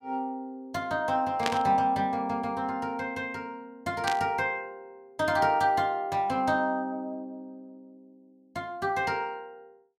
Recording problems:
static burst; at 1.5 s and at 4 s; peak +4 dB vs average level

